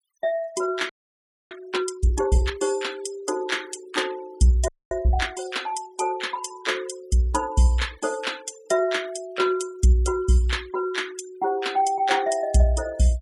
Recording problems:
noise reduction artefacts; signal-to-artefact ratio 19 dB
frozen audio; at 1 s for 0.5 s and at 4.5 s

